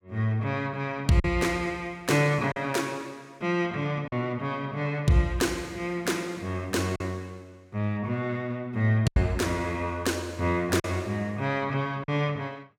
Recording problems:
packet loss; 3% of the sound replaced, filled with silence

